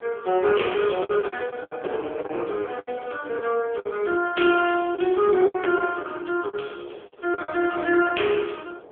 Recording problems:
telephone audio; 300 Hz to 3.3 kHz, AMR-NB
wind on the microphone; below 660 Hz, SNR 23 dB
packet loss; 10% of the sound replaced, filled with the last packet

